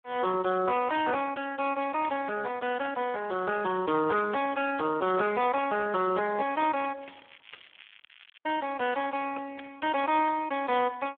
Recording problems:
phone line; 300 Hz to 3.3 kHz, Speex
crackle; at 3.5 s and from 7 to 8.5 s; loose cable, SNR 24 dB

